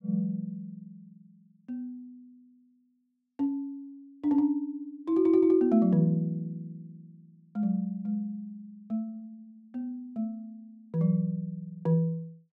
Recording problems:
none

